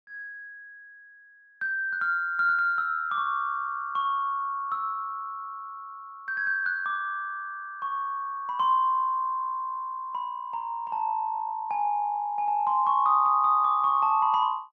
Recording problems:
none

